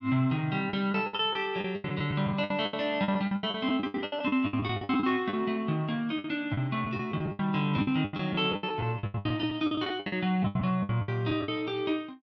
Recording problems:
lost packets; 19% of the sound replaced, filled with the last packet

